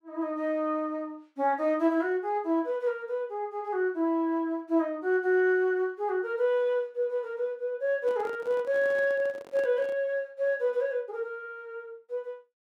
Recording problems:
handling noise; from 8 to 10 s; peak -10 dB vs average level

